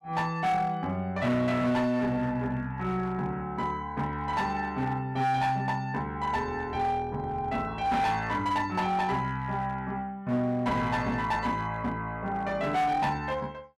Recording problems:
distortion; hard clipping, uneven, signal-to-distortion ratio 11 dB

